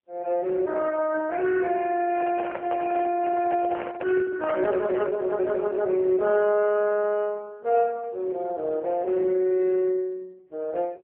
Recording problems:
phone line; 240 Hz to 2.9 kHz, AMR-NB
microphone handling noise; from 2 to 5 s; peak -2 dB vs average level

